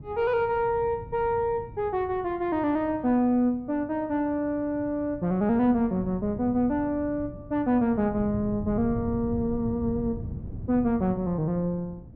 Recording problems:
wind on the microphone; below 170 Hz, SNR 13 dB

